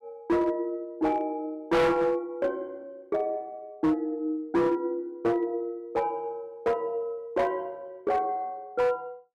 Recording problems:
distortion; hard clipping, uneven, signal-to-distortion ratio 8 dB

